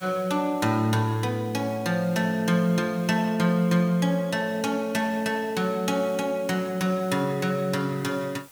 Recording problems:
hiss; slope -1 dB per octave, SNR 25 dB

